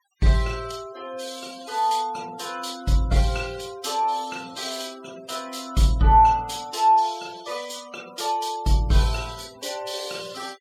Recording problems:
denoising artefacts; signal-to-artefact ratio 20 dB

